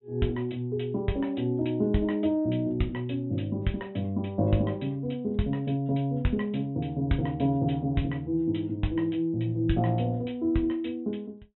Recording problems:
treble missing; nothing above 3.8 kHz

